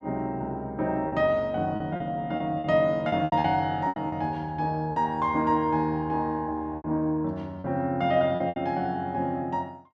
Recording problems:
lost packets; 8% of the sound replaced, filled with repeated pitch periods

